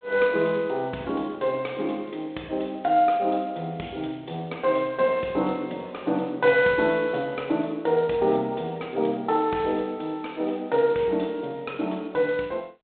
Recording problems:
telephone audio; 260 Hz to 3.7 kHz, G.726

